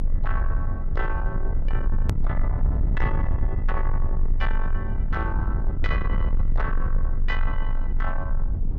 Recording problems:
distortion; soft clipping, signal-to-distortion ratio 12 dB
low-frequency rumble; below 54 Hz, strongest tone 24 Hz, SNR -6 dB
click at an edit; at 2 s

